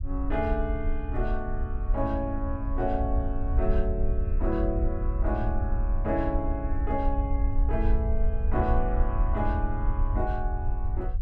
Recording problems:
low-frequency rumble; below 64 Hz, SNR -2 dB

